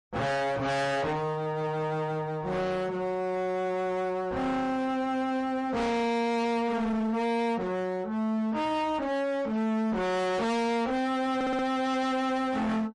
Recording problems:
lossy codec; MP3, then MP3, log-spectral distance 2 dB, nothing above 10.4 kHz
distorted audio; hard clipping, uneven, signal-to-distortion ratio 5 dB
audio stuttering; at 11 s

